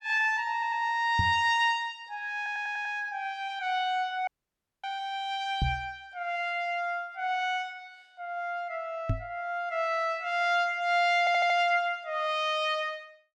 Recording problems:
audio stuttering; at 0.5 s, at 2.5 s and at 11 s
knock on the microphone; at 1 s, at 5.5 s and at 9 s; peak +3 dB vs average level
dropout; at 4.5 s for 0.5 s

